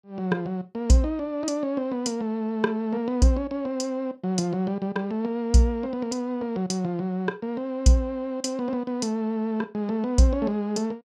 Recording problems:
none

